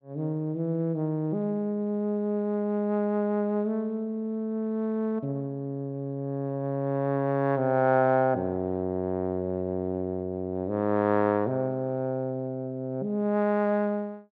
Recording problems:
none

